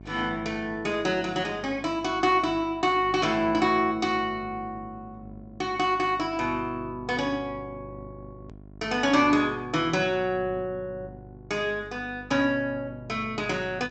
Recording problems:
low-pass filter; nothing above 8 kHz
hum; 50 Hz, harmonics up to 750 Hz, SNR 20 dB
edit click; at 8.5 s

